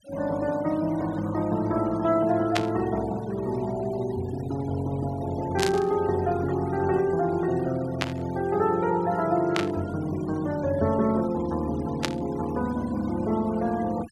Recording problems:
noise reduction artefacts; signal-to-artefact ratio 19 dB
static burst; 5 times, first at 2.5 s; peak +4 dB vs average level

